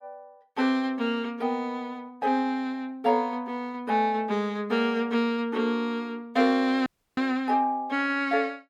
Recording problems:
dropout; at 7 s

